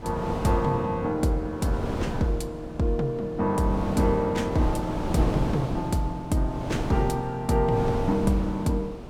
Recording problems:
wind noise; below 490 Hz, SNR 7 dB

